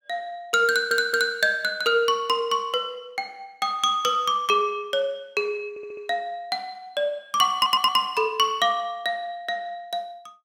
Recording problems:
stutter; at 0.5 s, at 5.5 s and at 7.5 s

